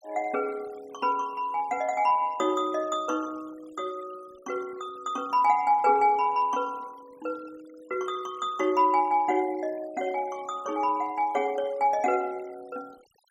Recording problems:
noise reduction artefacts; signal-to-artefact ratio 27 dB

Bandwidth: 16 kHz